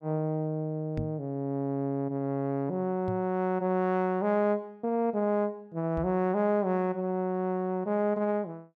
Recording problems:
knock on the microphone; at 1 s, at 3 s and at 6 s; peak -1 dB vs average level

